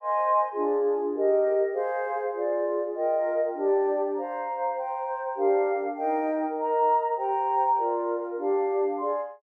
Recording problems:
none

